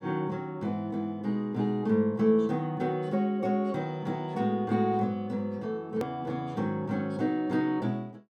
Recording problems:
click at an edit; at 6 s

